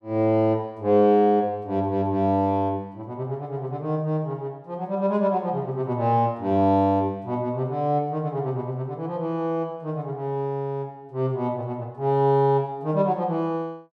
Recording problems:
none

